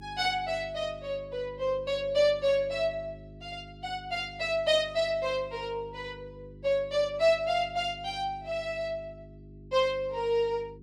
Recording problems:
electrical hum; 50 Hz, harmonics up to 400 Hz, SNR 19 dB

